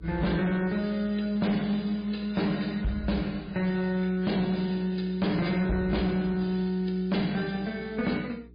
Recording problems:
lossy codec; MP3, log-spectral distance 3 dB, nothing above 4.1 kHz
distorted audio; hard clipping, signal-to-distortion ratio 11 dB
mains hum; 60 Hz, harmonics up to 420 Hz, SNR 24 dB

